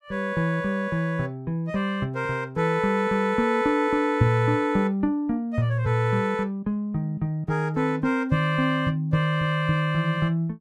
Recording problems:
none

